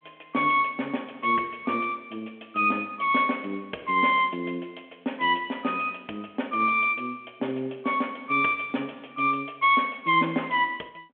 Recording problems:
telephone audio; 220 Hz to 3.4 kHz, G.726

